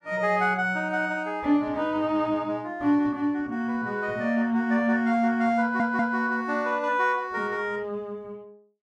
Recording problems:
audio stuttering; at 5.5 s

